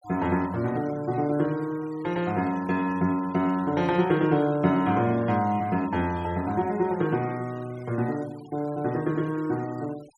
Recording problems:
denoising artefacts; signal-to-artefact ratio 22 dB

